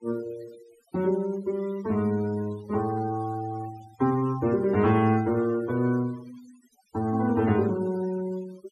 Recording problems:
denoising artefacts; signal-to-artefact ratio 21 dB

